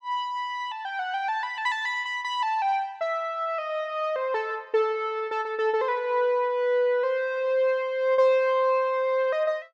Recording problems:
none

